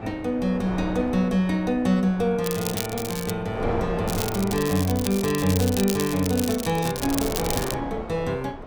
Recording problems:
wind noise; below 770 Hz, SNR 10 dB
crackle; at 2.5 s and from 4 to 8 s; loose cable, SNR 7 dB

